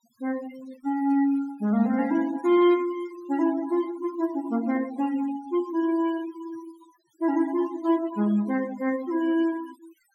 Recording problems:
denoising artefacts; signal-to-artefact ratio 18 dB

